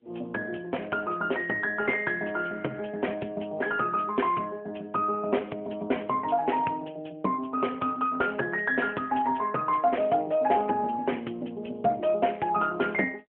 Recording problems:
phone line; 280 Hz to 3.1 kHz, AMR-NB

